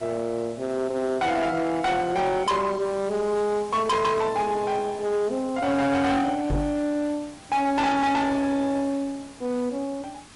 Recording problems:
lossy codec; MP3, log-spectral distance 2 dB, nothing above 10.7 kHz
distortion; hard clipping, uneven, signal-to-distortion ratio 8 dB
hiss; slope -2 dB per octave, SNR 21 dB
knock on the microphone; at 6.5 s; peak +2 dB vs average level

